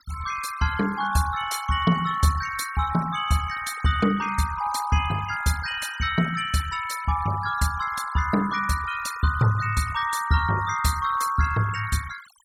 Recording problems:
noise reduction artefacts; signal-to-artefact ratio 13 dB

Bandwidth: 17.5 kHz